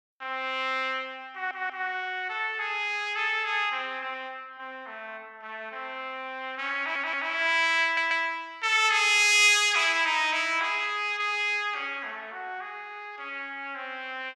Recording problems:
stutter; at 1.5 s, at 7 s and at 8 s

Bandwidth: 15 kHz